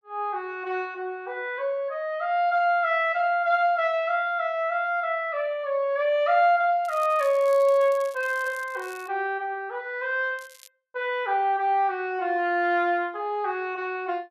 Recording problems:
crackle; from 7 to 9 s and at 10 s; loose cable, SNR 24 dB

